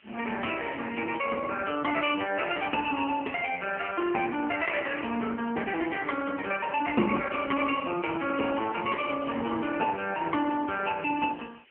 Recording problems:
telephone audio; 240 Hz to 3.1 kHz, AMR-NB
hiss; SNR 29 dB

